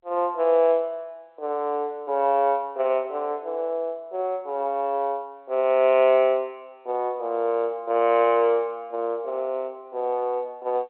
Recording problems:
telephone audio; 320 Hz to 3.3 kHz, G.711

